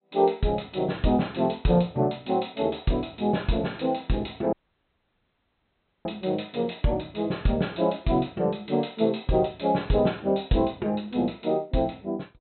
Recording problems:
low-pass filter; nothing above 4.1 kHz
dropout; at 4.5 s for 1.5 s

